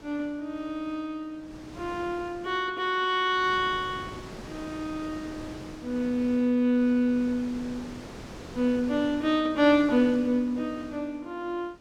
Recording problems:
wind on the microphone; below 1.2 kHz, SNR 17 dB

